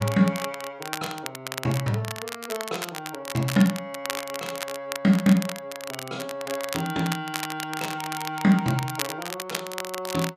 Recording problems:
crackle; vinyl, SNR 8 dB

